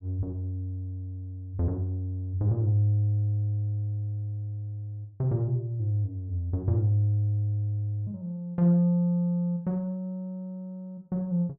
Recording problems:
none

